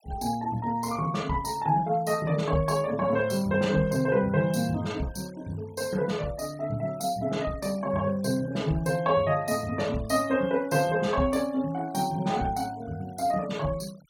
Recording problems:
denoising artefacts; signal-to-artefact ratio 24 dB

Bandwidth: 17 kHz